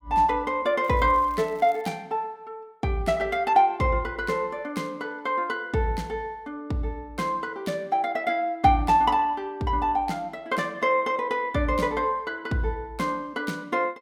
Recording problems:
crackling; from 1 to 2 s; loose cable, SNR 30 dB

